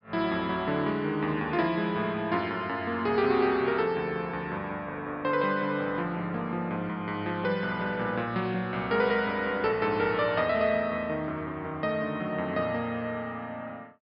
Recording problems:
low-pass filter; nothing above 5.5 kHz

